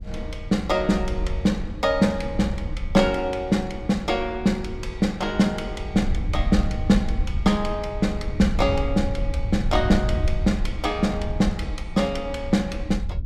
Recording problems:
wind noise; below 80 Hz, SNR 6 dB

